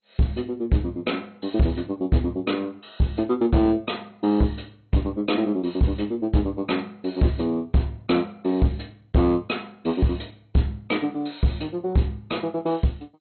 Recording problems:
codec artefacts; MP2, log-spectral distance 5 dB, nothing above 4.2 kHz
distorted audio; hard clipping, signal-to-distortion ratio 11 dB

